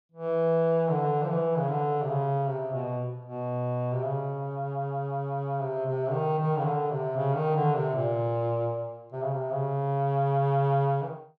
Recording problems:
none

